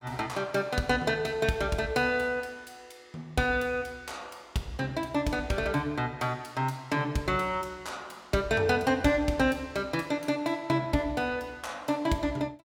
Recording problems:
none

